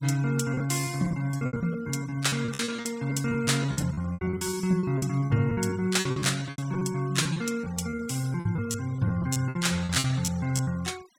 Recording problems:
noise reduction artefacts; signal-to-artefact ratio 20 dB
packet loss; 20% of the sound replaced, filled with repeated pitch periods

